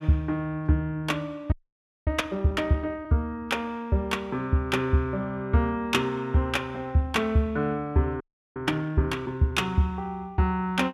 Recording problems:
frozen audio; at 1.5 s for 0.5 s and at 8 s

